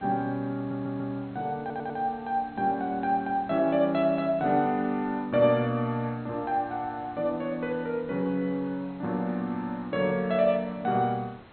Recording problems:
treble missing; nothing above 4.2 kHz
background hiss; SNR 24 dB
stutter; at 0.5 s and at 1.5 s

